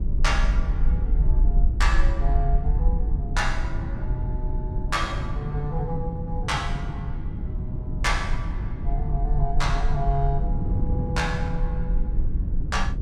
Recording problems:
low-frequency rumble; below 48 Hz, SNR -2 dB
wind on the microphone; below 160 Hz, SNR 1 dB

